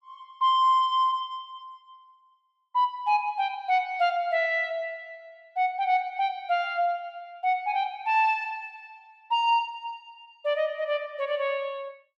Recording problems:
none

